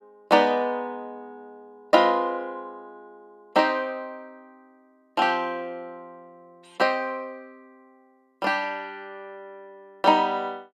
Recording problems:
none

